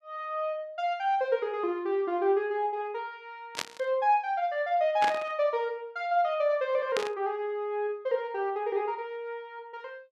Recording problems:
static burst; at 3.5 s, at 5 s and at 7 s; peak +1 dB vs average level

